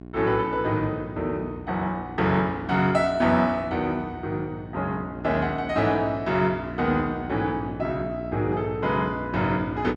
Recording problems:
mains hum; 60 Hz, harmonics up to 1.1 kHz, SNR 12 dB

